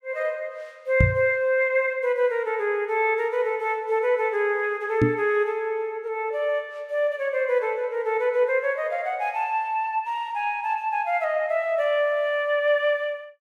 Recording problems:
microphone thump; at 1 s and at 5 s; peak +7 dB vs average level

